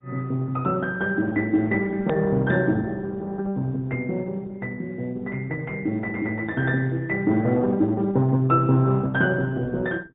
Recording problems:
treble missing; nothing above 3.7 kHz
lossy compression; Opus, log-spectral distance 2 dB
hard cut with a click; at 2 s

